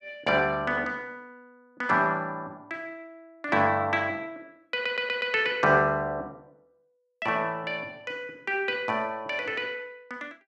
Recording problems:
stutter; at 4.5 s

